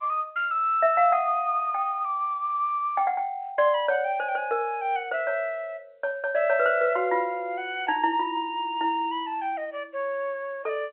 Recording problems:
phone line; 300 Hz to 3.1 kHz, G.711

